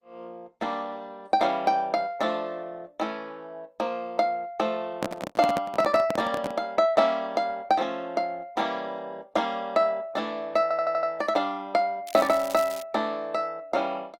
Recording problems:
lossy compression; Opus, log-spectral distance 2 dB, nothing above 16.6 kHz
handling noise; from 5 to 6.5 s; peak +1 dB vs average level
stutter; at 11 s
crackling; at 12 s; loose cable, SNR 17 dB

